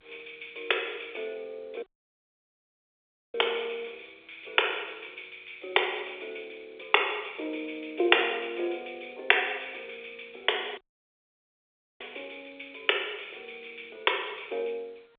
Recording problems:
telephone audio; 370 Hz to 3.9 kHz, G.711
dropout; at 2 s for 1.5 s and at 11 s for 1 s

